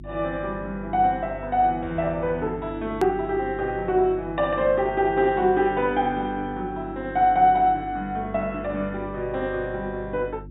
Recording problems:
treble missing; nothing above 4 kHz
electrical hum; 50 Hz, harmonics up to 350 Hz, SNR 17 dB
edit click; at 3 s

